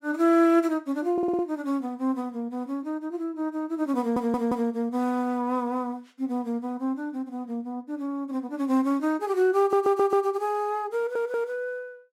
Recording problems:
audio stuttering; 4 times, first at 1 s

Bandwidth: 16 kHz